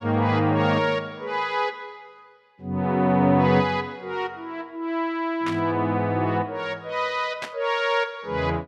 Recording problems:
static burst; at 5.5 s and at 7.5 s; peak -5 dB vs average level

